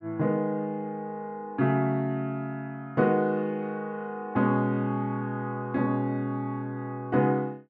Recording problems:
none

